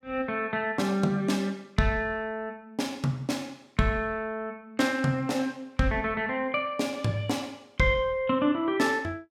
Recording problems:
none

